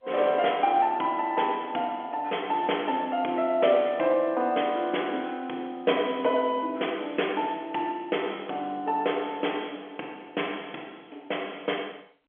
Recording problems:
phone line; 220 Hz to 3.4 kHz, G.711

